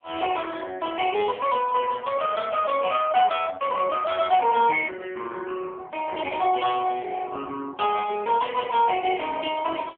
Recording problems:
telephone audio; 280 Hz to 3.3 kHz, AMR-NB

